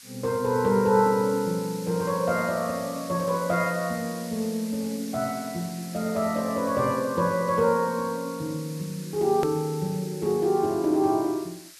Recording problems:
hiss; slope +4 dB per octave, SNR 16 dB
click at an edit; at 9.5 s

